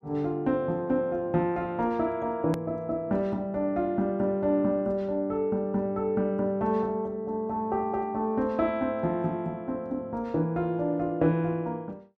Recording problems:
edit click; at 2.5 s

